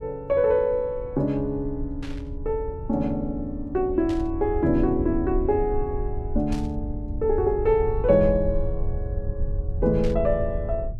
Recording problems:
low-frequency rumble; below 78 Hz, SNR 8 dB
static burst; 4 times, first at 2 s; peak -12 dB vs average level

